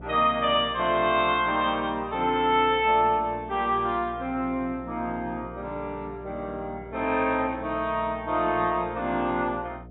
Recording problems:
treble cut off; nothing above 3.8 kHz
hum; 60 Hz, harmonics up to 720 Hz, SNR 19 dB

